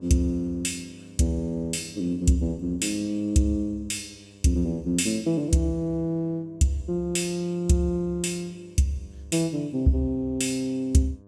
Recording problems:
hum; 50 Hz, harmonics up to 1.1 kHz, SNR 25 dB

